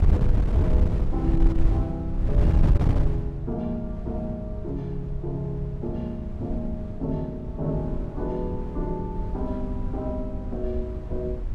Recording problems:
wind noise; below 94 Hz, SNR -3 dB

